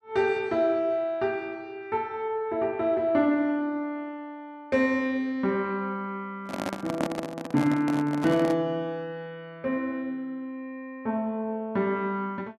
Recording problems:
handling noise; from 6.5 to 8.5 s; peak +2 dB vs average level

